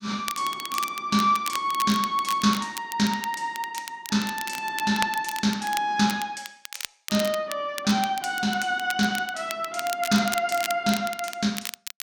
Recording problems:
crackle; vinyl, SNR 10 dB

